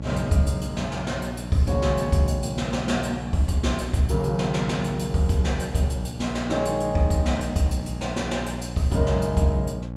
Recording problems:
hum; 60 Hz, harmonics up to 900 Hz, SNR 10 dB

